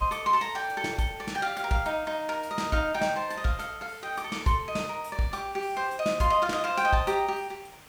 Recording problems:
hiss; SNR 22 dB

